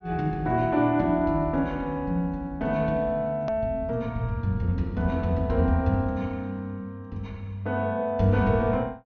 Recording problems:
treble cut off; nothing above 6.4 kHz
click at an edit; at 3.5 s

